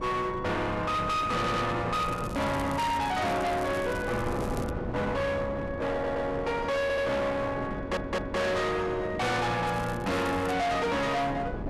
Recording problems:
distorted audio; hard clipping, uneven, signal-to-distortion ratio 6 dB
wind on the microphone; below 560 Hz, SNR 9 dB
audio stuttering; 4 times, first at 1.5 s
crackle; from 2 to 4.5 s and at 9.5 s; loose cable, SNR 20 dB

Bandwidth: 12.5 kHz